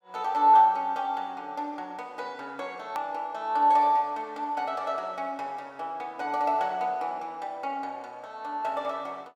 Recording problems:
edit click; at 3 s

